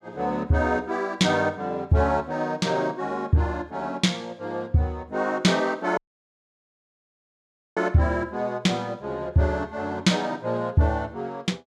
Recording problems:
dropout; at 6 s for 2 s

